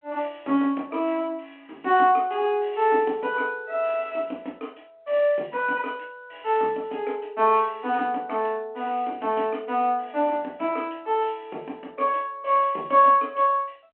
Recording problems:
phone line; 240 Hz to 3.3 kHz, G.726

